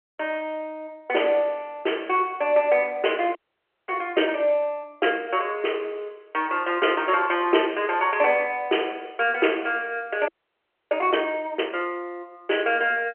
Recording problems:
telephone audio; 280 Hz to 3.2 kHz, G.711
audio freezing; at 3.5 s for 0.5 s and at 10 s for 0.5 s

